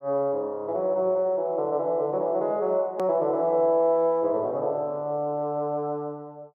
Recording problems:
hard cut with a click; at 3 s

